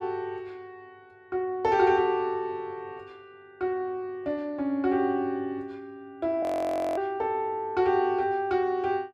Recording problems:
audio freezing; at 6.5 s for 0.5 s

